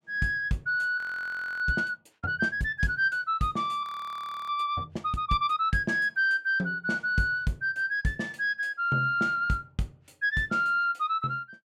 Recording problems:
frozen audio; at 1 s for 0.5 s and at 4 s for 0.5 s

